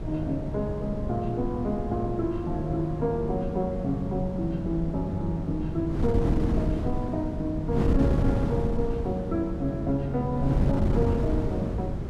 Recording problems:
wind on the microphone; below 240 Hz, SNR 1 dB

